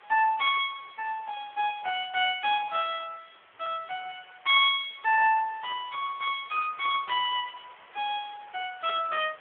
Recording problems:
telephone audio; 340 Hz to 3.5 kHz, Speex
hiss; SNR 26 dB

